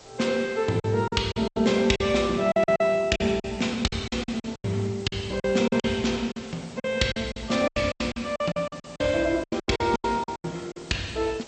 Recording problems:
lossy compression; MP2, log-spectral distance 4 dB, nothing above 8 kHz
background hiss; SNR 21 dB
lost packets; 16% of the sound replaced, filled with silence

